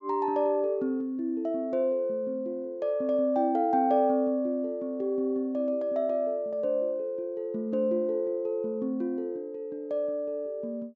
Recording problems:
low-pass filter; nothing above 8 kHz

